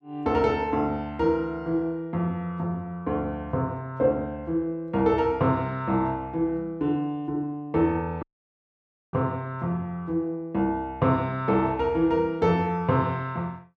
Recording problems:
audio cutting out; at 8 s for 1 s

